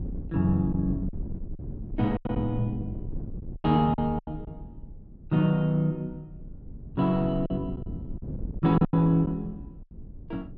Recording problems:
wind on the microphone; below 180 Hz, SNR 12 dB
lost packets; 8% of the sound replaced, filled with silence

